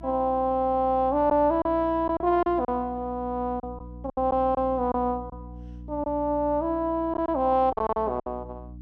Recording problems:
mains hum; 60 Hz, harmonics up to 300 Hz, SNR 17 dB
packet loss; 7% of the sound replaced, filled with silence

